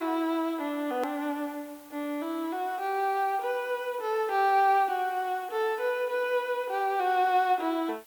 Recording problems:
background hiss; slope -1 dB per octave, SNR 24 dB
edit click; at 1 s

